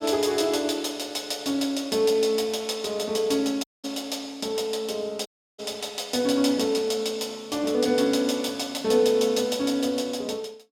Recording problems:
dropout; at 3.5 s and at 5.5 s

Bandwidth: 16 kHz